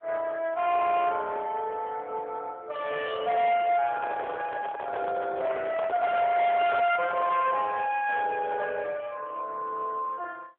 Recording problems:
telephone audio; 390 Hz to 3.5 kHz, AMR-NB
distorted audio; hard clipping, uneven, signal-to-distortion ratio 9 dB
handling noise; from 4 to 7.5 s; peak -4 dB vs average level

